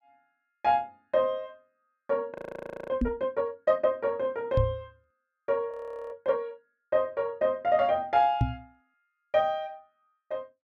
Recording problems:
audio freezing; at 2.5 s for 0.5 s and at 5.5 s
microphone thump; at 3 s, at 4.5 s and at 8.5 s; peak +7 dB vs average level

